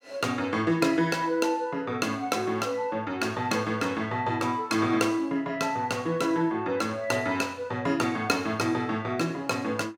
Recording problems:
none

